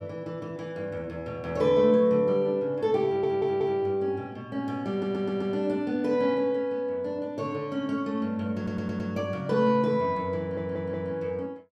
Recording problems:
audio stuttering; 4 times, first at 3 s

